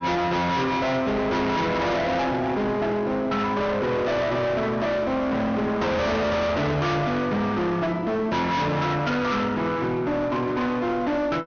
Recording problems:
treble missing; nothing above 6.5 kHz
distortion; hard clipping, uneven, signal-to-distortion ratio 5 dB

